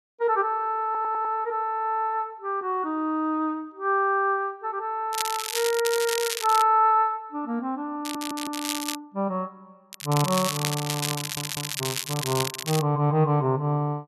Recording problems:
audio stuttering; at 1 s, at 8 s and at 11 s
crackling; from 5 to 6.5 s, at 8 s and from 10 to 13 s; loose cable, SNR 5 dB

